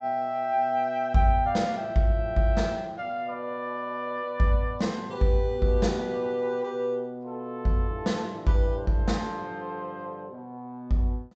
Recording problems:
treble missing; nothing above 8 kHz

